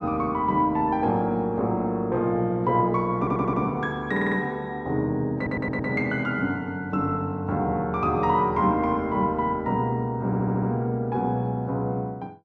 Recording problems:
audio stuttering; 4 times, first at 3 s

